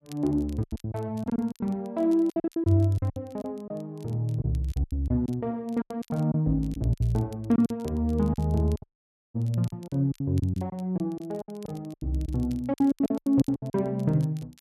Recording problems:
crackling; vinyl, SNR 28 dB
lost packets; 15% of the sound replaced, filled with silence
dropout; at 9 s for 0.5 s

